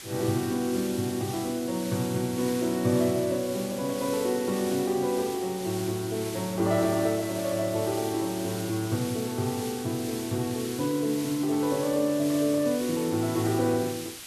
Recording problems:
background hiss; slope +1 dB per octave, SNR 11 dB

